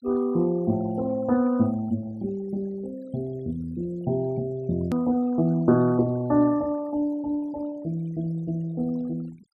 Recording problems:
noise reduction artefacts; signal-to-artefact ratio 23 dB
hard cut with a click; at 5 s

